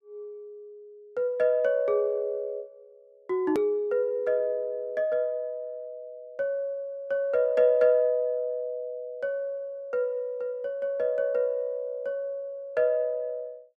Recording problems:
hard cut with a click; at 3.5 s

